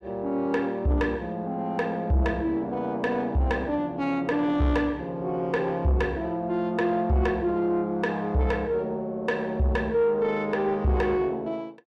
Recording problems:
distortion; soft clipping, signal-to-distortion ratio 11 dB

